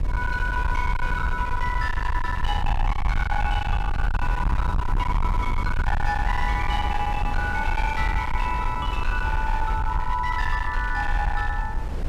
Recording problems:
distorted audio; hard clipping, signal-to-distortion ratio 7 dB
low-frequency rumble; below 68 Hz, SNR 1 dB
wind on the microphone; below 340 Hz, SNR 8 dB

